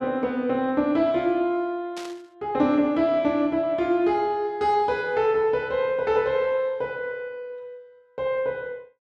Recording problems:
static burst; at 2 s; peak -11 dB vs average level

